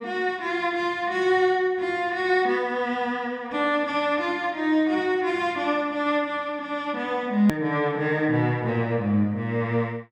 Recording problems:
click at an edit; at 7.5 s

